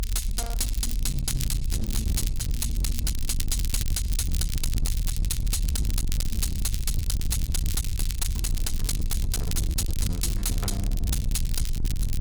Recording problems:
distortion; hard clipping, uneven, signal-to-distortion ratio 5 dB
low-frequency rumble; below 76 Hz, SNR 0 dB
crackle; vinyl, SNR 8 dB

